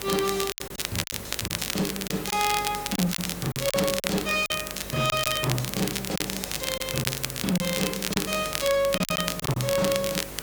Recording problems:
distortion; hard clipping, uneven, signal-to-distortion ratio 11 dB
mains hum; 50 Hz, harmonics up to 600 Hz, SNR 16 dB
hiss; slope -2 dB per octave, SNR 11 dB
crackle; vinyl, SNR 3 dB
lost packets; 8% of the sound replaced, filled with silence

